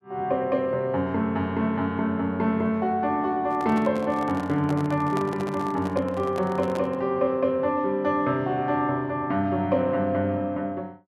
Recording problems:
handling noise; from 3.5 to 7 s; peak -3 dB vs average level

